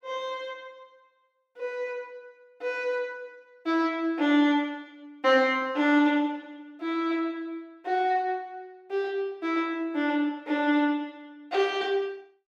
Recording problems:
none

